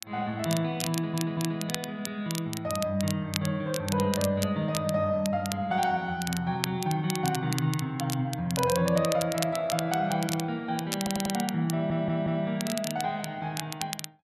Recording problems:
crackle; vinyl, SNR 8 dB
stutter; at 1 s, at 11 s and at 12 s

